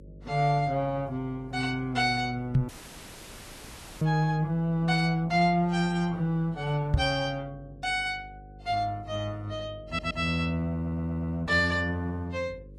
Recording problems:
lossy codec; Vorbis, log-spectral distance 3 dB, nothing above 12 kHz
hum; 50 Hz, harmonics up to 550 Hz, SNR 20 dB
microphone thump; at 2.5 s and at 7 s; peak +7 dB vs average level
dropout; at 2.5 s for 1.5 s
audio stuttering; at 10 s and at 11 s

